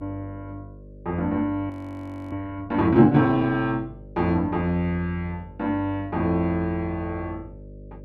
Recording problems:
electrical hum; 50 Hz, harmonics up to 600 Hz, SNR 20 dB
audio freezing; at 1.5 s for 0.5 s

